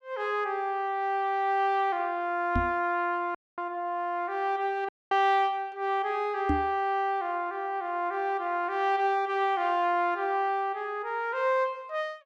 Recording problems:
microphone bump; at 2.5 s and at 6.5 s; peak +4 dB vs average level
audio cutting out; at 3.5 s and at 5 s

